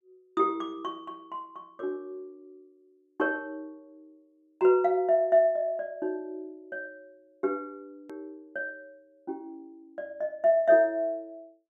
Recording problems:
edit click; at 8 s

